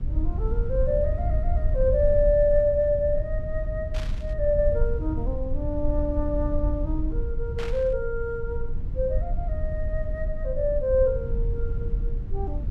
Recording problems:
low-frequency rumble; below 68 Hz, SNR 3 dB
burst of static; at 4 s and at 7.5 s; peak -8 dB vs average level

